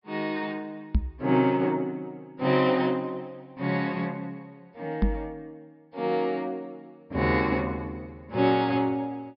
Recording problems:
treble missing; nothing above 5.5 kHz
microphone bump; at 1 s and at 5 s; peak +7 dB vs average level

